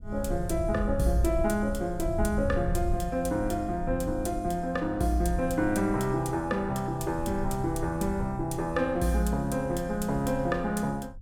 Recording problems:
rumble; below 92 Hz, SNR 9 dB

